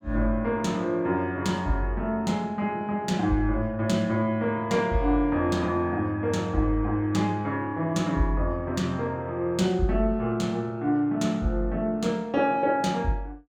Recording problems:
none

